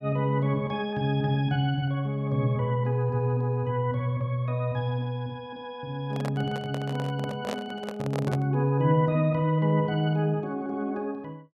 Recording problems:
handling noise; from 6 to 8.5 s; peak -3 dB vs average level

